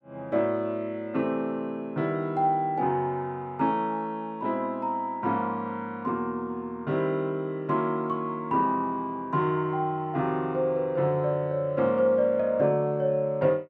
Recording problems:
none

